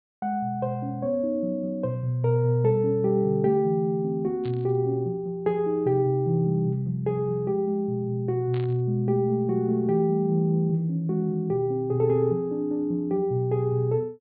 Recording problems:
treble missing; nothing above 4.5 kHz
static burst; at 4.5 s and at 8.5 s; peak -15 dB vs average level

